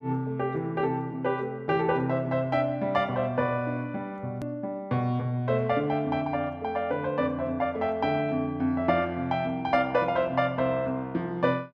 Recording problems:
hard cut with a click; at 4.5 s

